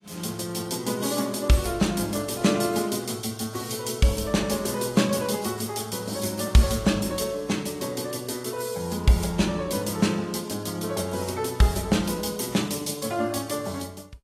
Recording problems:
codec artefacts; AAC, log-spectral distance 5 dB, nothing above 15.1 kHz

